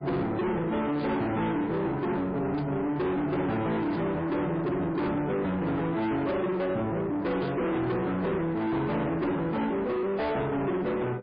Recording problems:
lossy compression; MP3, log-spectral distance 2 dB, nothing above 10.7 kHz
distortion; soft clipping, signal-to-distortion ratio 7 dB
burst of static; 4 times, first at 1 s; peak -13 dB vs average level

